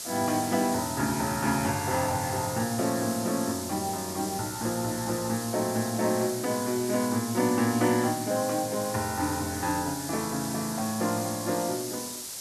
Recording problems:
hiss; SNR 7 dB

